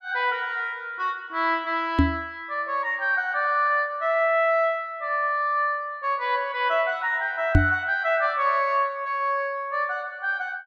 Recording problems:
microphone thump; at 2 s and at 7.5 s; peak +9 dB vs average level

